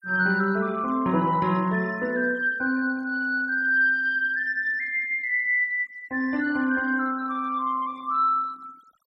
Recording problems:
noise reduction artefacts; signal-to-artefact ratio 25 dB

